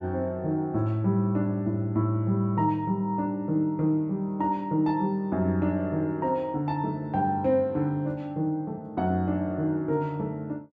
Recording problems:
none

